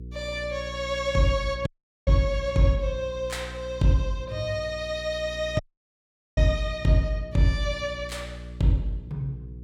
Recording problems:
hum; 60 Hz, harmonics up to 480 Hz, SNR 14 dB
audio cutting out; at 1.5 s and at 5.5 s for 1 s

